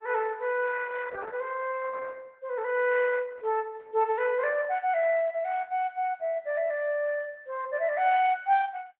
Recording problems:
treble missing; nothing above 4 kHz
lossy codec; Opus, log-spectral distance 3 dB

